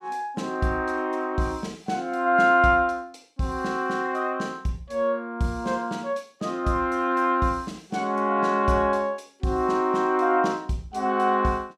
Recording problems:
none

